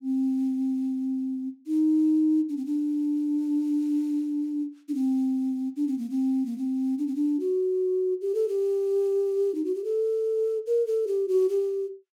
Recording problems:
none

